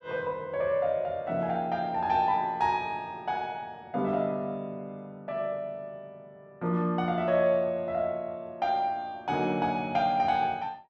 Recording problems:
none

